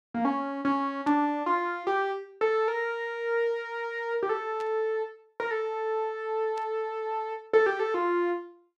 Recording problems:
burst of static; at 1 s, at 4.5 s and at 6.5 s; peak -15 dB vs average level

